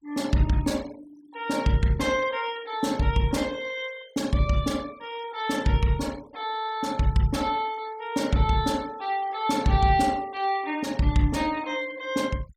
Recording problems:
denoising artefacts; signal-to-artefact ratio 22 dB

